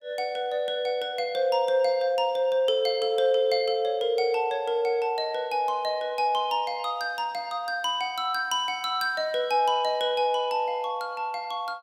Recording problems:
none

